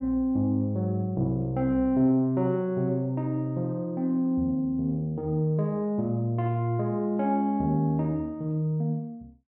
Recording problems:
none

